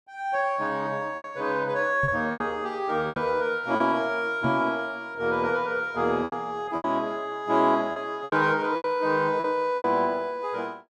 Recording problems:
lost packets; 7% of the sound replaced, filled with repeated pitch periods
knock on the microphone; at 2 s and at 4.5 s; peak -1 dB vs average level

